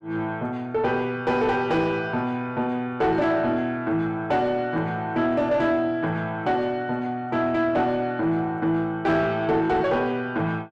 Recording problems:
distorted audio; soft clipping, signal-to-distortion ratio 11 dB

